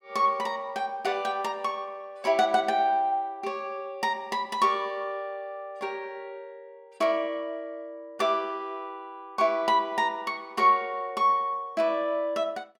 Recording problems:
none

